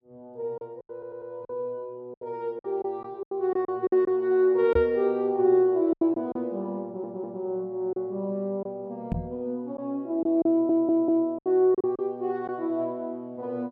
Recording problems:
lost packets; 8% of the sound replaced, filled with silence
audio stuttering; at 1 s, at 7 s and at 11 s
microphone bump; at 4.5 s and at 9 s; peak +1 dB vs average level

